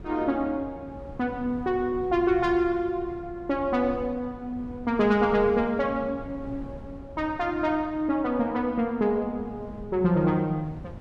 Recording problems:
wind on the microphone; below 250 Hz, SNR 17 dB

